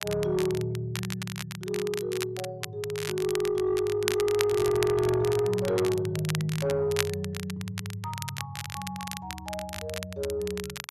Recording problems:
distortion; soft clipping, signal-to-distortion ratio 11 dB
crackle; vinyl, SNR 8 dB

